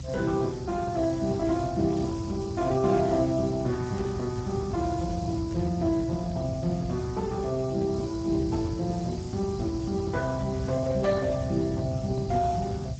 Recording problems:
lossy compression; Speex, log-spectral distance 6 dB
background hiss; slope +6 dB per octave, SNR 20 dB
rumble; below 150 Hz, SNR 8 dB
burst of static; 5 times, first at 2 s; peak -17 dB vs average level

